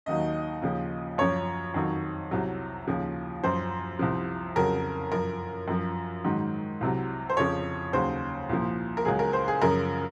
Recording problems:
none

